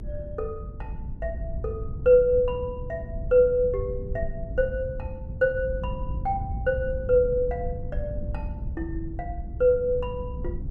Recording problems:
rumble; below 100 Hz, SNR 9 dB

